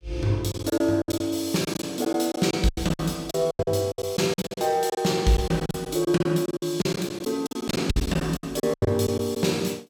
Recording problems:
packet loss; 16% of the sound replaced, filled with silence

